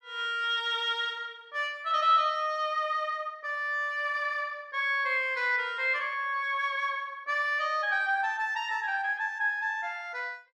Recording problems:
none

